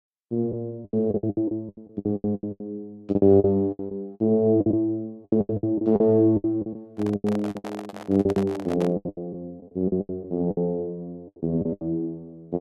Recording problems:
lost packets; 19% of the sound replaced, filled with the last packet
handling noise; from 7 to 9 s; peak -5 dB vs average level

